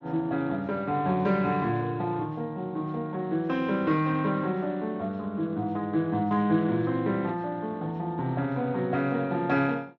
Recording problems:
lossy codec; Speex, log-spectral distance 2 dB

